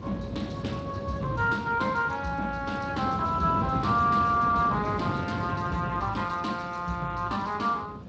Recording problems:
lossy codec; Speex, log-spectral distance 4 dB
wind noise; below 370 Hz, SNR 7 dB

